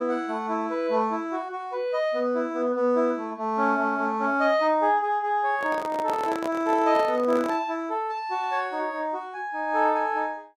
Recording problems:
microphone handling noise; from 5.5 to 7.5 s; peak -4 dB vs average level

